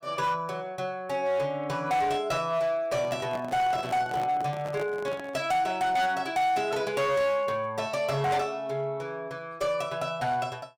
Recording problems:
distorted audio; hard clipping, signal-to-distortion ratio 11 dB
handling noise; from 3 to 5.5 s; peak -5 dB vs average level

